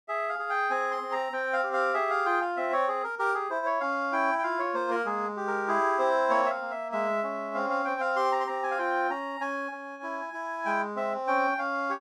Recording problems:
none

